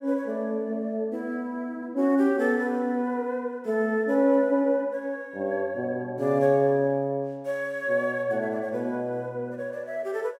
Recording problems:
none

